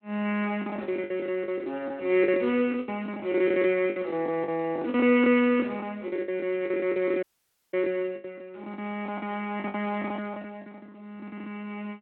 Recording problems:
telephone audio; 240 Hz to 3.1 kHz, Speex
packet loss; 17% of the sound replaced, filled with the last packet
audio cutting out; at 7 s for 0.5 s

